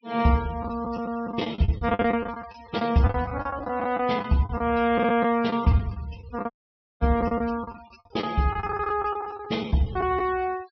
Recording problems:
treble cut off; nothing above 5.5 kHz
denoising artefacts; signal-to-artefact ratio 21 dB
lost packets; 13% of the sound replaced, filled with the last packet
dropout; at 6.5 s for 0.5 s

